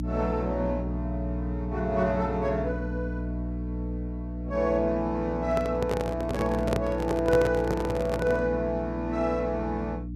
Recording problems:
hum; 60 Hz, harmonics up to 300 Hz, SNR 5 dB
handling noise; from 5.5 to 8.5 s; peak +3 dB vs average level

